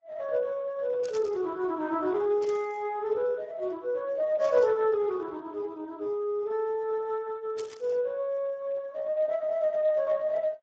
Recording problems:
lossy codec; AAC, then Speex, log-spectral distance 2 dB
burst of static; 4 times, first at 1 s; peak -10 dB vs average level

